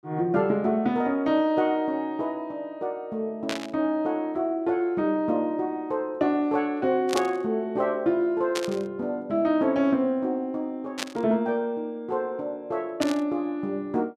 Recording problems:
static burst; 5 times, first at 3.5 s; peak +1 dB vs average level

